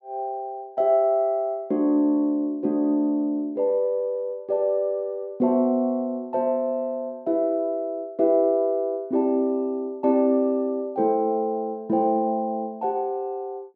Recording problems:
none

